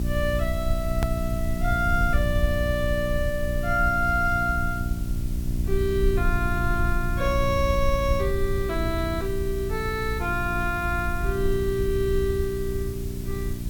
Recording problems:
electrical hum; 60 Hz, harmonics up to 660 Hz, SNR 6 dB
hiss; slope +1 dB per octave, SNR 17 dB
low-frequency rumble; below 74 Hz, SNR 4 dB
hard cut with a click; at 1 s

